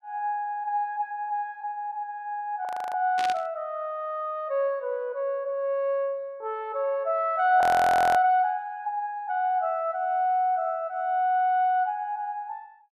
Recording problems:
frozen audio; at 2.5 s and at 7.5 s for 0.5 s
burst of static; at 3 s; peak -3 dB vs average level

